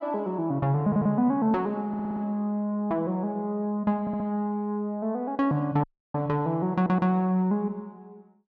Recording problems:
audio stuttering; 4 times, first at 1 s
audio cutting out; at 6 s

